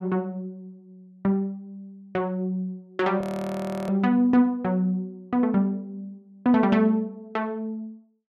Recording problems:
frozen audio; at 3 s for 0.5 s

